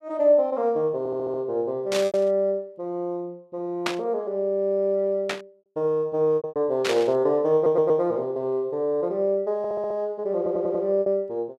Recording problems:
packet loss; 3% of the sound replaced, filled with repeated pitch periods
stutter; 4 times, first at 1 s
static burst; 4 times, first at 2 s; peak +2 dB vs average level

